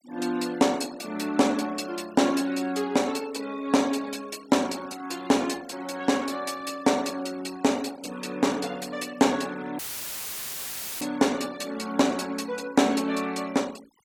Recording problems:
noise reduction artefacts; signal-to-artefact ratio 20 dB
audio cutting out; at 10 s for 1 s; filled with static

